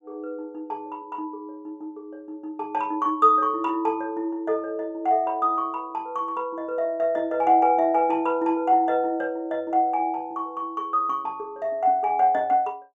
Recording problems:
none

